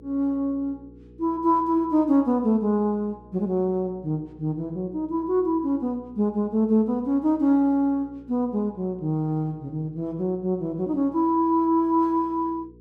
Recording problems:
electrical hum; 60 Hz, harmonics up to 480 Hz, SNR 25 dB

